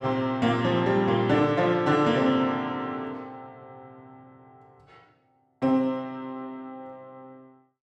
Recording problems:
none

